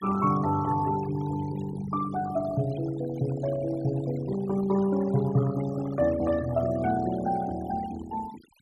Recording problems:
denoising artefacts; signal-to-artefact ratio 15 dB

